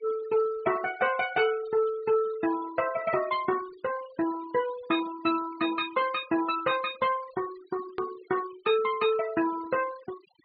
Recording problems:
treble missing; nothing above 4.8 kHz
denoising artefacts; signal-to-artefact ratio 16 dB
edit click; at 8 s

